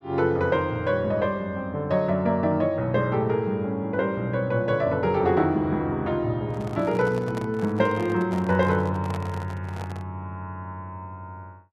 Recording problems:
microphone handling noise; from 6.5 to 10 s; peak -7 dB vs average level

